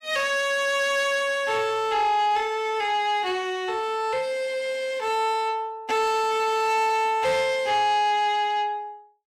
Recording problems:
distortion; soft clipping, signal-to-distortion ratio 12 dB

